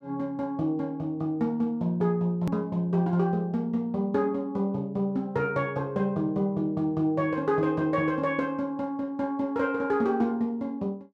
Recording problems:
click at an edit; at 2.5 s

